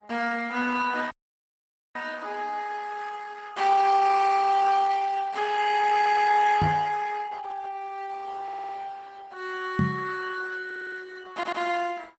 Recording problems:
lossy codec; Opus, log-spectral distance 4 dB, nothing above 8 kHz
audio cutting out; at 1 s for 1 s
audio stuttering; 4 times, first at 6 s
microphone bump; at 6.5 s and at 10 s; peak +5 dB vs average level

